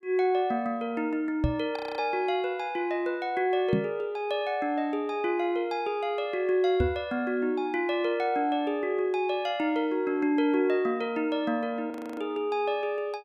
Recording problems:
microphone thump; at 1.5 s, at 3.5 s and at 7 s; peak +5 dB vs average level
audio freezing; at 2 s and at 12 s

